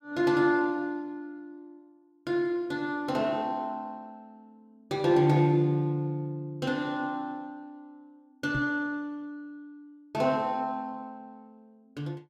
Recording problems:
microphone thump; at 8.5 s; peak +1 dB vs average level

